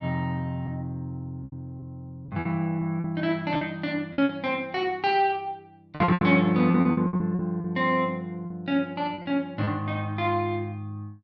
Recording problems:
packet loss; 9% of the sound replaced, filled with repeated pitch periods

